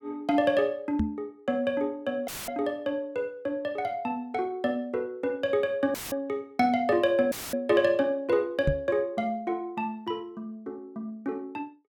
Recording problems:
microphone thump; at 1 s and at 8.5 s; peak +5 dB vs average level
audio cutting out; at 2.5 s, at 6 s and at 7.5 s; filled with static

